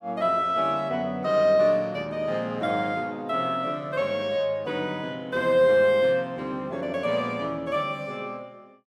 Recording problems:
none

